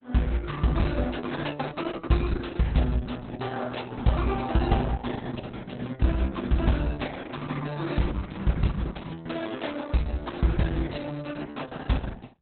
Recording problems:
lossy compression; Opus, log-spectral distance 6 dB, nothing above 4.1 kHz

